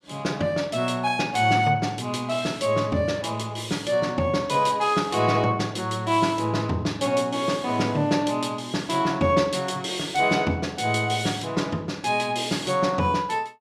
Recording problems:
none

